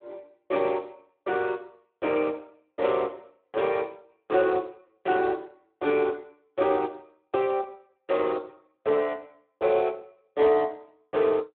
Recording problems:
telephone audio; 280 Hz to 3.5 kHz, Speex

